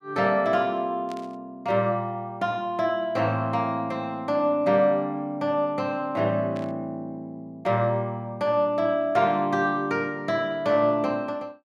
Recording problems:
burst of static; at 1 s and at 6.5 s; peak -15 dB vs average level

